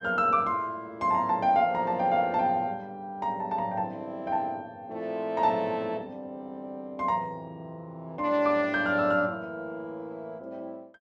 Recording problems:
none

